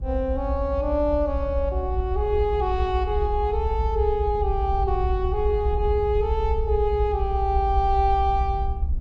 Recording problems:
low-frequency rumble; below 68 Hz, SNR 3 dB

